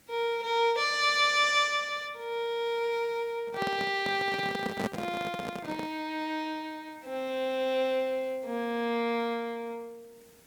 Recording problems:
hiss; SNR 29 dB
microphone handling noise; from 3.5 to 6 s; peak +2 dB vs average level

